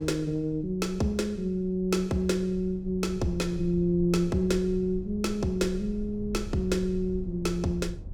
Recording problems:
rumble; below 86 Hz, SNR 14 dB

